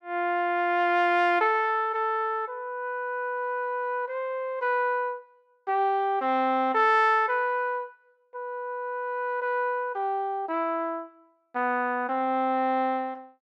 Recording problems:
none

